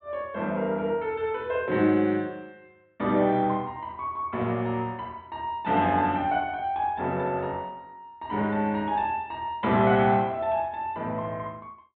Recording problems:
treble missing; nothing above 4 kHz

